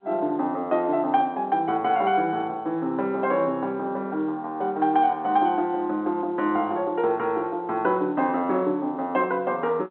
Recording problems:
phone line; 220 Hz to 4 kHz, G.711

